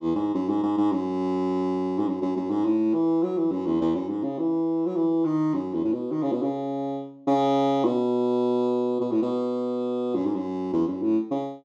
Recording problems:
none

